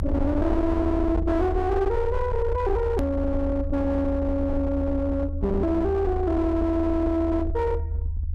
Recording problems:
distorted audio; hard clipping, uneven, signal-to-distortion ratio 10 dB
rumble; below 80 Hz, SNR 5 dB
click at an edit; at 3 s

